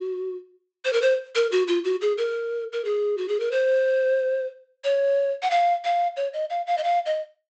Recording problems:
treble missing; nothing above 8 kHz

